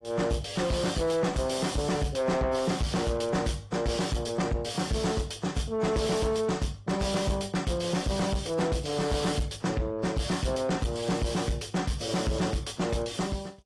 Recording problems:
codec artefacts; AAC, log-spectral distance 3 dB, nothing above 11 kHz
distortion; soft clipping, signal-to-distortion ratio 7 dB

